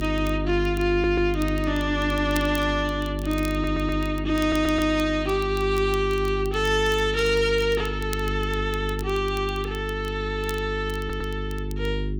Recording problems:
distorted audio; soft clipping, signal-to-distortion ratio 12 dB
mains hum; 50 Hz, harmonics up to 400 Hz, SNR 6 dB
crackle; vinyl, SNR 20 dB
audio stuttering; 4 times, first at 1 s

